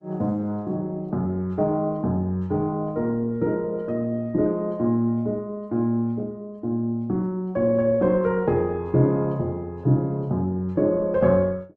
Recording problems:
codec artefacts; Opus, log-spectral distance 2 dB

